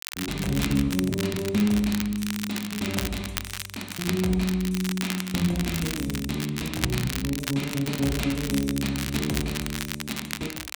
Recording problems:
crackle; vinyl, SNR 6 dB

